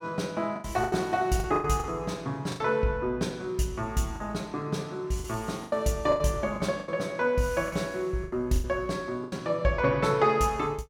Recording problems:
lost packets; 10% of the sound replaced, filled with the last packet

